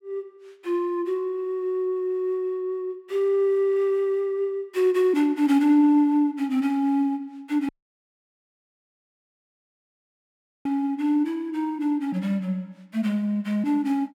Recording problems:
dropout; at 7.5 s for 3 s

